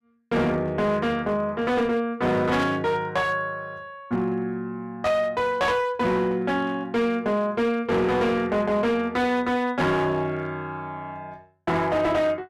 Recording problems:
distortion; hard clipping, uneven, signal-to-distortion ratio 10 dB
static burst; at 2.5 s and at 5 s; peak -8 dB vs average level

